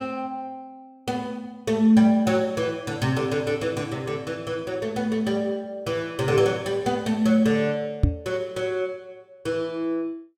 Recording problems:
knock on the microphone; at 8 s; peak +9 dB vs average level

